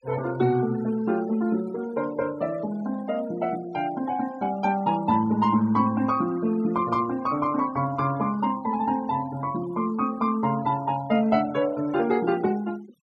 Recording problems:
denoising artefacts; signal-to-artefact ratio 21 dB

